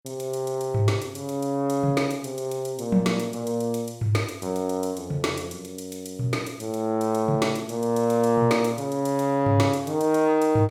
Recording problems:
none

